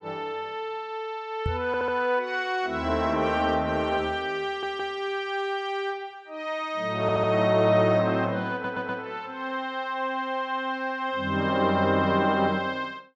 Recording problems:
microphone thump; at 1.5 s; peak 0 dB vs average level
stutter; 4 times, first at 1.5 s

